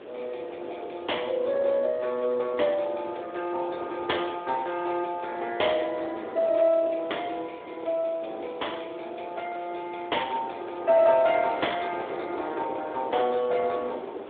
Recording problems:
telephone audio; 320 Hz to 3.5 kHz, Speex
background hiss; SNR 26 dB
wind noise; below 680 Hz, SNR 13 dB

